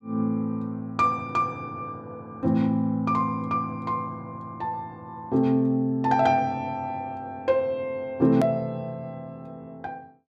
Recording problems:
click at an edit; at 8.5 s

